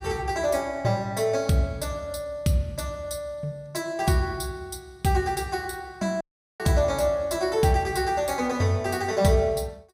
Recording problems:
audio cutting out; at 6 s

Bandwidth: 15.5 kHz